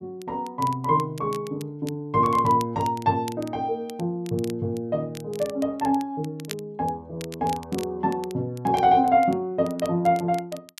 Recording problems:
crackle; vinyl, SNR 20 dB

